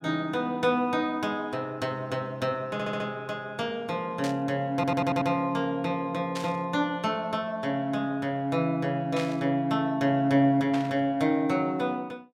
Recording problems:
audio stuttering; at 2.5 s and at 4.5 s
static burst; 4 times, first at 4 s; peak -5 dB vs average level

